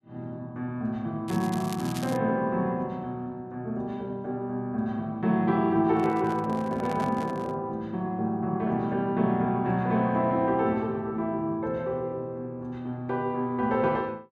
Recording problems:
crackle; at 1.5 s; loose cable, SNR 15 dB
handling noise; from 6 to 7.5 s; peak -5 dB vs average level

